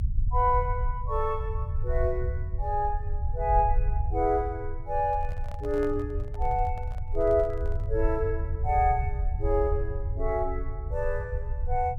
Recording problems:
low-frequency rumble; below 74 Hz, strongest tone 20 Hz, SNR 3 dB
microphone handling noise; from 5 to 8 s; peak -10 dB vs average level

